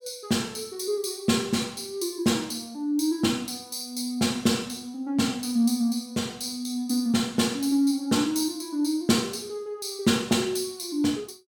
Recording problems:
none

